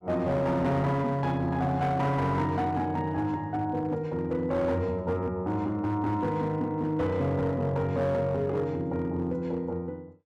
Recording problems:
distortion; hard clipping, signal-to-distortion ratio 12 dB

